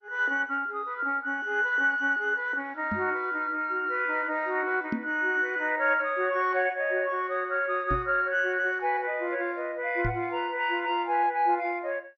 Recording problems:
lossy codec; MP2, log-spectral distance 3 dB, nothing above 6 kHz
knock on the microphone; 4 times, first at 3 s; peak 0 dB vs average level

